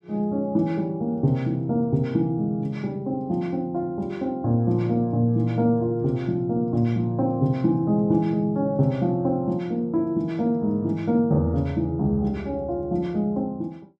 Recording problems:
none

